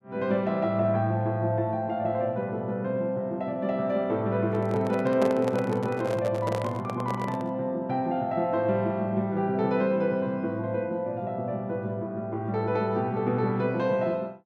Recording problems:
microphone handling noise; from 4.5 to 7.5 s; peak 0 dB vs average level

